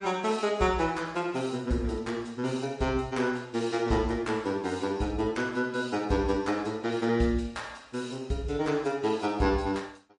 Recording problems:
lossy codec; MP3, log-spectral distance 2 dB, nothing above 9.8 kHz

